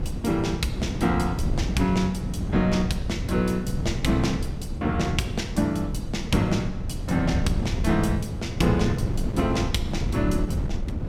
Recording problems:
wind noise; below 180 Hz, SNR 4 dB

